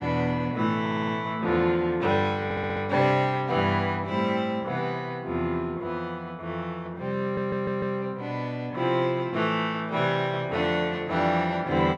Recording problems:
stutter; at 1 s, at 2.5 s and at 7 s

